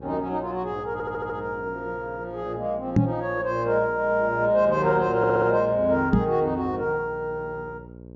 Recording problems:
low-pass filter; nothing above 8 kHz
mains hum; 60 Hz, harmonics up to 900 Hz, SNR 19 dB
audio stuttering; at 1 s and at 5 s
knock on the microphone; at 3 s and at 6 s; peak +9 dB vs average level

